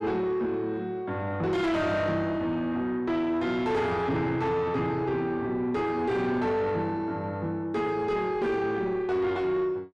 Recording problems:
distorted audio; soft clipping, signal-to-distortion ratio 10 dB

